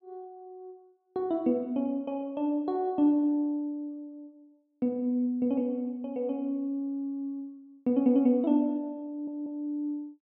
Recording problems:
stutter; at 9 s

